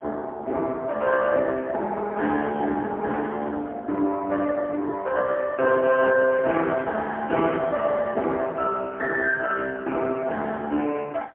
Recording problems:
phone line; 260 Hz to 3.1 kHz, AMR-NB, then MP3

